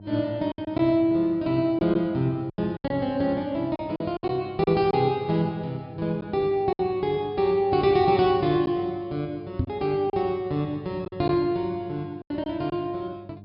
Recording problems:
treble cut off; nothing above 5.5 kHz
electrical hum; 50 Hz, harmonics up to 700 Hz, SNR 21 dB
packet loss; 6% of the sound replaced, filled with silence
knock on the microphone; at 9.5 s; peak +3 dB vs average level

